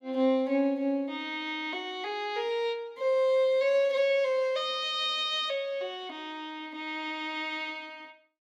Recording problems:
none

